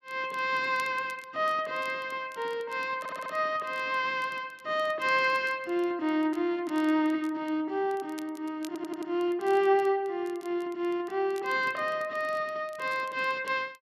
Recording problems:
crackling; vinyl, SNR 26 dB
audio stuttering; at 3 s and at 8.5 s

